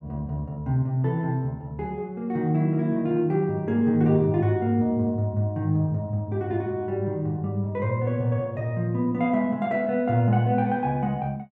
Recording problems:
none

